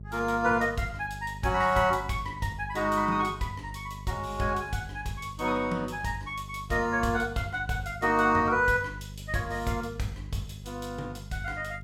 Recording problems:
electrical hum; 50 Hz, harmonics up to 400 Hz, SNR 14 dB

